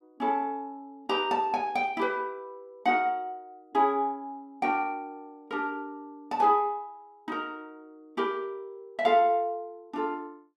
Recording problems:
none

